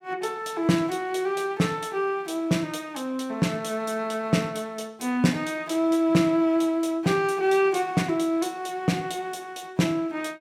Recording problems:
none

